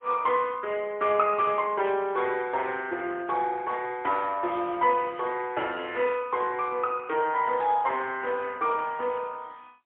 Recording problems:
phone line; 280 Hz to 3.5 kHz, AMR-NB, then MP3

